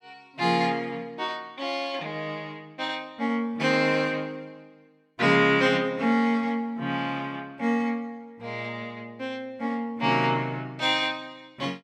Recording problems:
none

